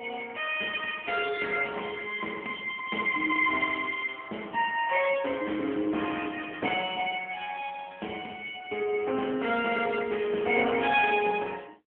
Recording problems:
phone line; 240 Hz to 3.3 kHz, AMR-NB

